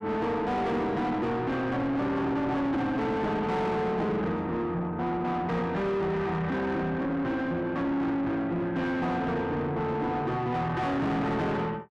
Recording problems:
distortion; soft clipping, signal-to-distortion ratio 7 dB

